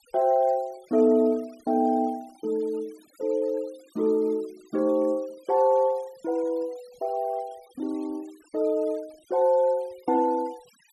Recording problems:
denoising artefacts; signal-to-artefact ratio 28 dB

